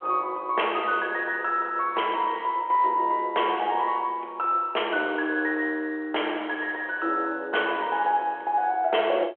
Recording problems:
phone line; 320 Hz to 3.3 kHz, G.726

